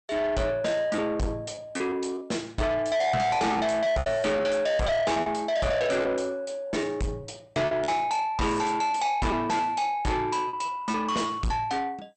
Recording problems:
codec artefacts; MP2, log-spectral distance 3 dB, nothing above 8.5 kHz
distorted audio; soft clipping, signal-to-distortion ratio 7 dB
lost packets; 7% of the sound replaced, filled with repeated pitch periods

